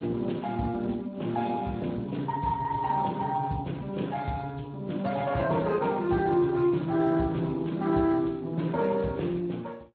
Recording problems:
lossy compression; AAC, then Speex, log-spectral distance 4 dB

